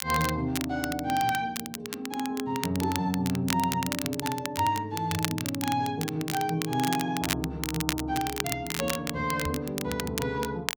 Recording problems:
crackle; vinyl, SNR 5 dB
microphone bump; at 9.5 s; peak -1 dB vs average level

